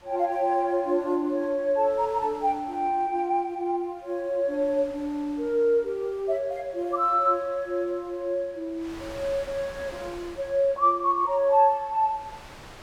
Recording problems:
wind noise; below 2.5 kHz, SNR 22 dB

